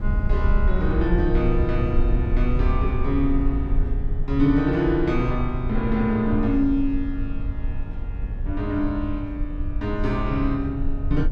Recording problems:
rumble; below 64 Hz, SNR 3 dB

